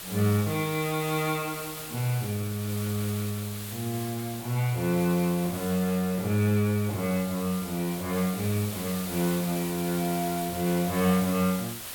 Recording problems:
background hiss; slope 0 dB per octave, SNR 9 dB

